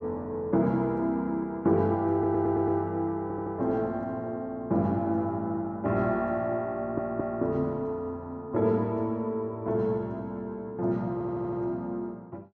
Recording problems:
audio stuttering; 4 times, first at 2 s

